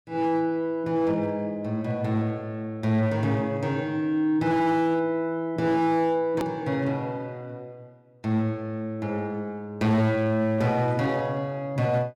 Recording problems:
distortion; hard clipping, signal-to-distortion ratio 12 dB
click at an edit; at 6.5 s

